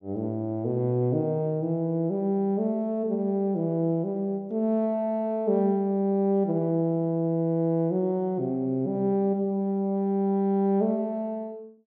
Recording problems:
none

